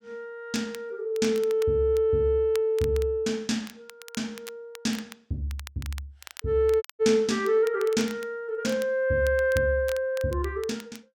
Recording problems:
crackle; vinyl, SNR 20 dB
audio cutting out; at 7 s

